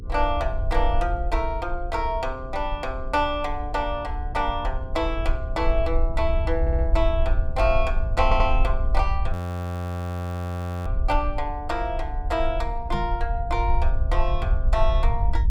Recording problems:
electrical hum; 60 Hz, harmonics up to 480 Hz, SNR 19 dB
rumble; below 60 Hz, SNR 1 dB
stutter; at 6.5 s and at 8 s
frozen audio; at 9.5 s for 1.5 s
knock on the microphone; at 13 s; peak 0 dB vs average level

